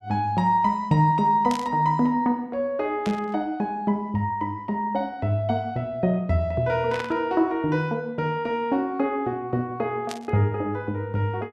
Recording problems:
static burst; 4 times, first at 1.5 s; peak -6 dB vs average level

